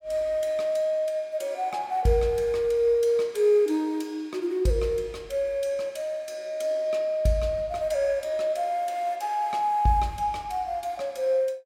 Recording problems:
none

